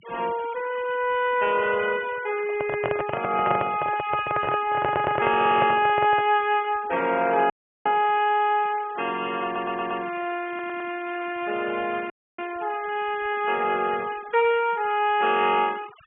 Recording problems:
treble cut off; nothing above 3.2 kHz
denoising artefacts; signal-to-artefact ratio 18 dB
microphone handling noise; from 2.5 to 6.5 s; peak +1 dB vs average level
audio stuttering; at 5 s, at 9.5 s and at 10 s
dropout; at 7.5 s and at 12 s

